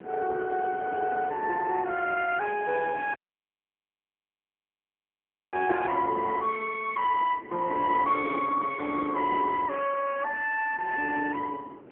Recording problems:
telephone audio; 240 Hz to 3 kHz, AMR-NB
wind noise; below 550 Hz, SNR 18 dB
audio cutting out; at 3 s for 2.5 s

